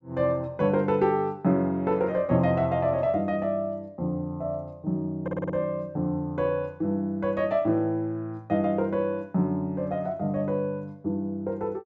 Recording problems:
stutter; at 5 s

